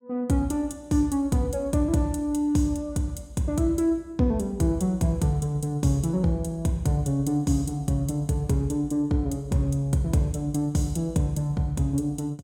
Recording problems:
none

